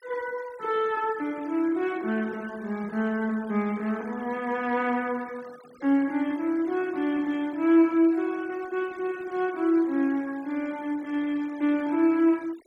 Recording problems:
denoising artefacts; signal-to-artefact ratio 24 dB

